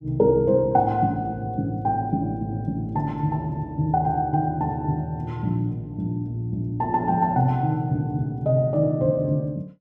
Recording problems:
none

